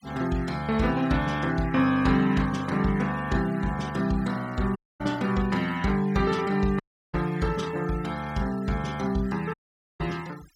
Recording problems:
denoising artefacts; signal-to-artefact ratio 21 dB
audio cutting out; at 5 s, at 7 s and at 9.5 s

